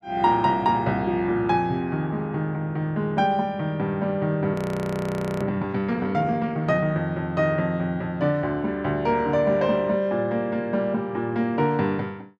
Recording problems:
audio freezing; at 4.5 s for 1 s

